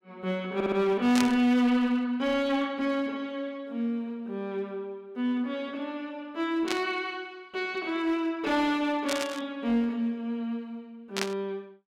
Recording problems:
distortion; hard clipping, uneven, signal-to-distortion ratio 10 dB
audio stuttering; at 0.5 s
burst of static; 4 times, first at 1 s; peak +3 dB vs average level

